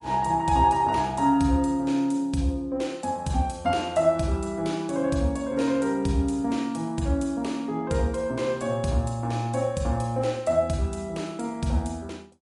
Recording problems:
lossy compression; MP3, log-spectral distance 2 dB, nothing above 11 kHz

